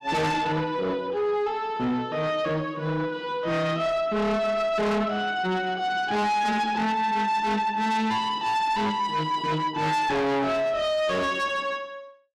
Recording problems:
distortion; soft clipping, signal-to-distortion ratio 6 dB

